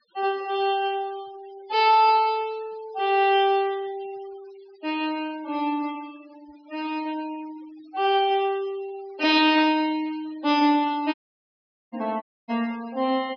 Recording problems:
treble missing; nothing above 5.5 kHz
denoising artefacts; signal-to-artefact ratio 24 dB
static burst; at 9.5 s; peak -11 dB vs average level
audio cutting out; at 11 s for 1 s and at 12 s

